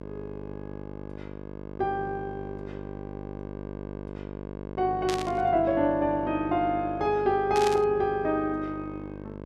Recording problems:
hum; 50 Hz, harmonics up to 1.6 kHz, SNR 12 dB
static burst; at 5 s and at 7.5 s; peak -3 dB vs average level

